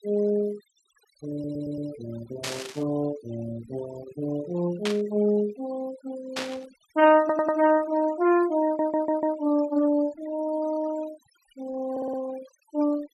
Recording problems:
denoising artefacts; signal-to-artefact ratio 19 dB
audio stuttering; 4 times, first at 1.5 s
burst of static; at 2.5 s, at 5 s and at 6.5 s; peak 0 dB vs average level

